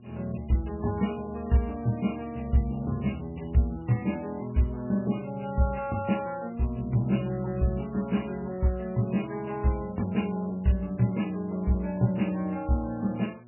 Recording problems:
lossy codec; MP3, log-spectral distance 4 dB, nothing above 2.9 kHz
electrical hum; 60 Hz, harmonics up to 960 Hz, SNR 24 dB

